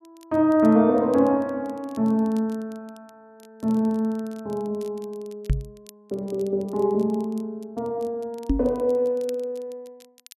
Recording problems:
crackling; vinyl, SNR 30 dB
microphone bump; at 5.5 s and at 8.5 s; peak +5 dB vs average level

